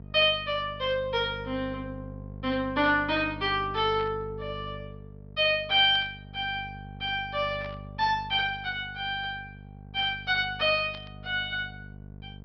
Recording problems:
low-pass filter; nothing above 5.5 kHz
electrical hum; 50 Hz, harmonics up to 700 Hz, SNR 16 dB
static burst; 4 times, first at 4 s; peak -13 dB vs average level

